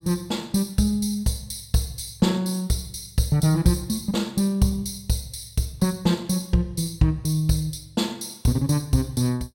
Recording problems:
none

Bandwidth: 16.5 kHz